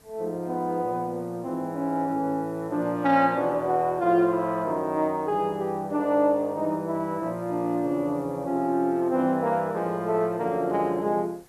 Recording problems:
hiss; SNR 30 dB

